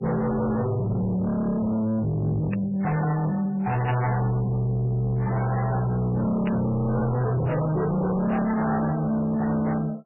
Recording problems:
lossy codec; MP3, log-spectral distance 2 dB, nothing above 2.6 kHz
distorted audio; soft clipping, signal-to-distortion ratio 7 dB
burst of static; at 2.5 s, at 4 s and at 6.5 s; peak -7 dB vs average level

